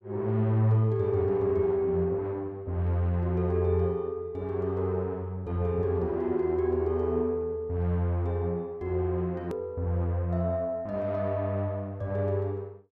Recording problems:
hard cut with a click; at 9.5 s

